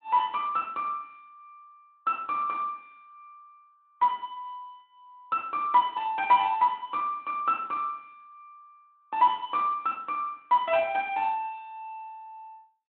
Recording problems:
telephone audio; 190 Hz to 4 kHz, Speex

